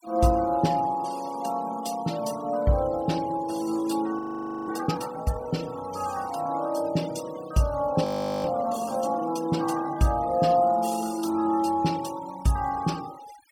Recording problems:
denoising artefacts; signal-to-artefact ratio 19 dB
audio freezing; at 4 s and at 8 s

